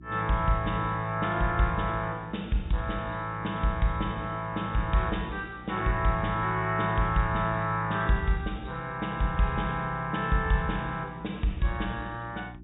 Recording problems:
low-pass filter; nothing above 4 kHz
hum; 60 Hz, harmonics up to 360 Hz, SNR 18 dB

